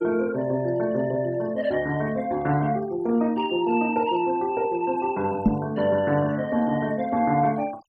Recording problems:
denoising artefacts; signal-to-artefact ratio 23 dB
microphone thump; at 5.5 s; peak +9 dB vs average level

